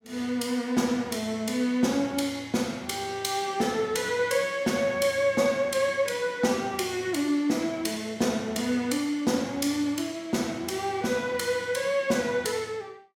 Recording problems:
none

